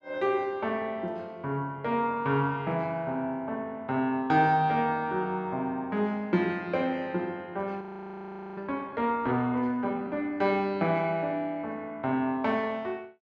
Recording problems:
audio freezing; at 8 s for 1 s

